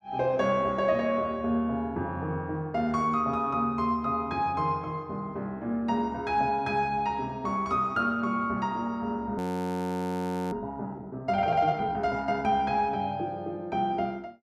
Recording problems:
frozen audio; at 9.5 s for 1 s

